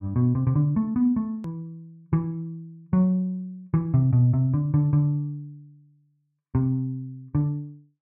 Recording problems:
edit click; at 1.5 s

